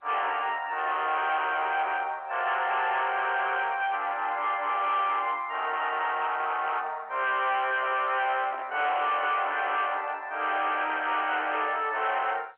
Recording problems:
telephone audio; 340 Hz to 3.5 kHz, G.711
distorted audio; hard clipping, uneven, signal-to-distortion ratio 10 dB
handling noise; from 7.5 to 10 s; peak -9 dB vs average level

